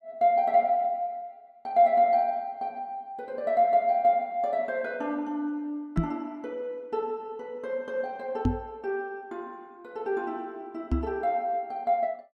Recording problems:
microphone thump; at 6 s, at 8.5 s and at 11 s; peak +6 dB vs average level

